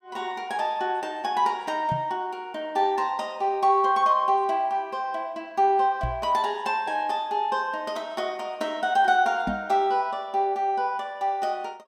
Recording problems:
knock on the microphone; at 2 s, at 6 s and at 9.5 s; peak -1 dB vs average level

